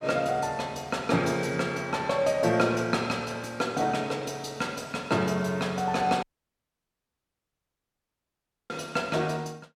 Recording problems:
dropout; at 6 s for 2.5 s

